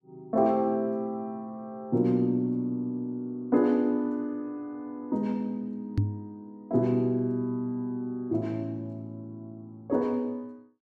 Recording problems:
knock on the microphone; at 6 s; peak +7 dB vs average level

